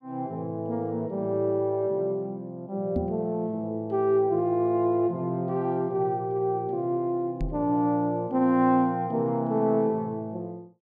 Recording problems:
knock on the microphone; at 3 s and at 7.5 s; peak +1 dB vs average level

